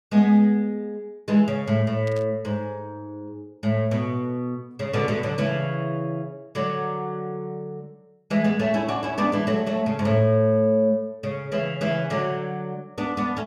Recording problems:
static burst; at 2 s; peak -15 dB vs average level

